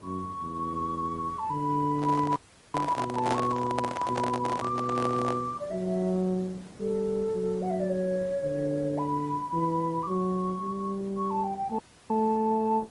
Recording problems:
lossy codec; Opus, then MP3, log-spectral distance 3 dB, nothing above 11 kHz
background hiss; slope -6 dB per octave, SNR 21 dB
microphone handling noise; from 2 to 5.5 s; peak +4 dB vs average level
dropout; at 2.5 s and at 12 s

